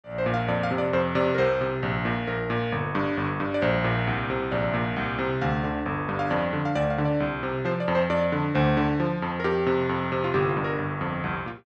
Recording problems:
none

